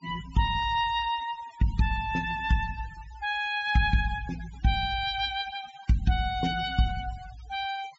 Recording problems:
low-pass filter; nothing above 8 kHz
noise reduction artefacts; signal-to-artefact ratio 19 dB

